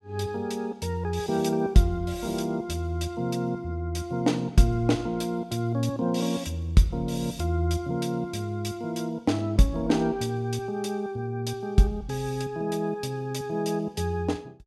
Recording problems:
none

